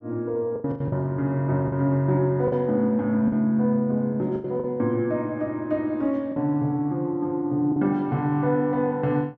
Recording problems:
packet loss; 6% of the sound replaced, filled with the last packet

